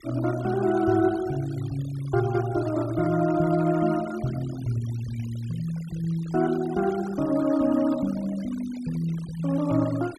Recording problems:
denoising artefacts; signal-to-artefact ratio 19 dB

